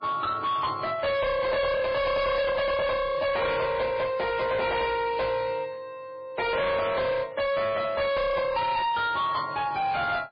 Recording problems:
codec artefacts; MP3, log-spectral distance 3 dB, nothing above 4.5 kHz
distorted audio; hard clipping, signal-to-distortion ratio 6 dB

